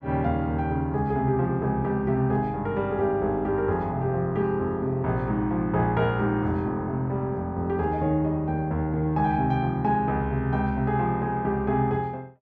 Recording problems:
none

